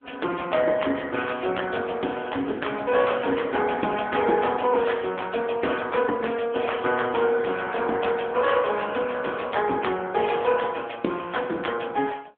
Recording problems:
telephone audio; 220 Hz to 3.3 kHz, AMR-NB

